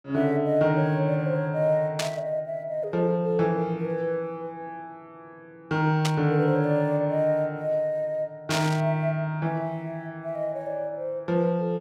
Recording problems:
static burst; at 2 s, at 6 s and at 8.5 s; peak +1 dB vs average level

